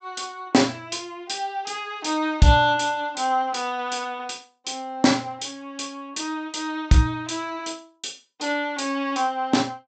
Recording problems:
treble missing; nothing above 8 kHz

